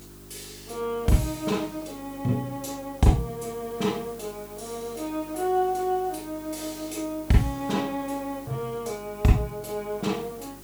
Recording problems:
mains hum; 50 Hz, harmonics up to 400 Hz, SNR 21 dB
background hiss; slope -2 dB per octave, SNR 19 dB

